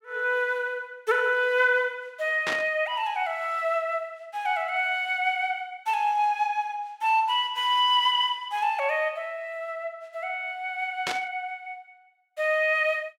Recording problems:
burst of static; at 2.5 s and at 11 s; peak 0 dB vs average level

